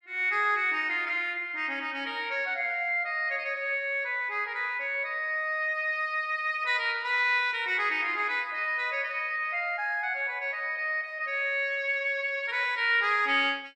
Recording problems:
none

